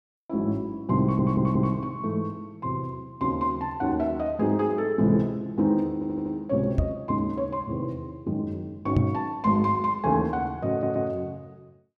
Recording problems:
audio stuttering; at 1 s, at 6 s and at 11 s
knock on the microphone; at 7 s and at 9 s; peak +8 dB vs average level

